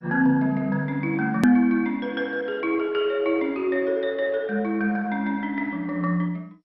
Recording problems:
lossy codec; MP2, log-spectral distance 2 dB, nothing above 13.1 kHz
click at an edit; at 1.5 s

